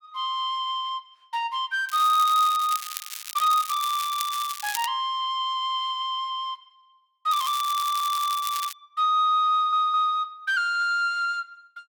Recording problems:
crackle; from 2 to 5 s and from 7.5 to 8.5 s; loose cable, SNR 10 dB
audio stuttering; at 7.5 s and at 9.5 s

